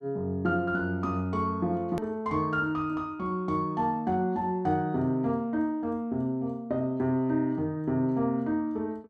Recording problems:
hard cut with a click; at 2 s

